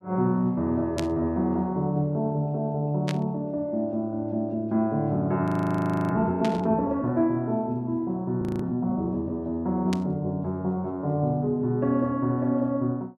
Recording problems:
static burst; 4 times, first at 1 s; peak -3 dB vs average level
audio freezing; at 5.5 s for 0.5 s and at 8.5 s

